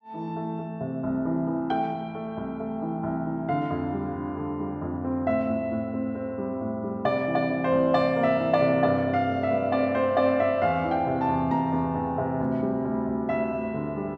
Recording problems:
none

